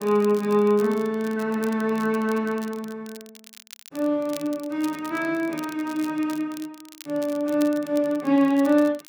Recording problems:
crackling; vinyl, SNR 21 dB

